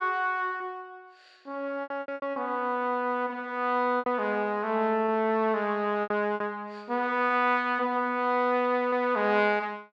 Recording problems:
lost packets; 6% of the sound replaced, filled with repeated pitch periods

